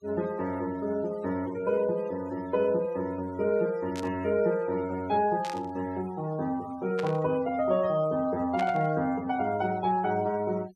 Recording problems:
denoising artefacts; signal-to-artefact ratio 20 dB
burst of static; 4 times, first at 4 s; peak -6 dB vs average level

